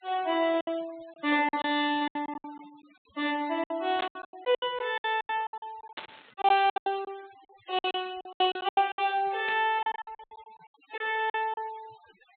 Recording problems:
treble cut off; nothing above 4 kHz
noise reduction artefacts; signal-to-artefact ratio 23 dB
lost packets; 18% of the sound replaced, filled with silence
static burst; at 4 s, at 6 s and at 9.5 s; peak -5 dB vs average level

